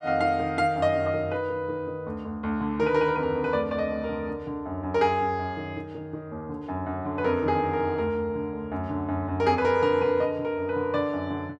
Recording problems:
none

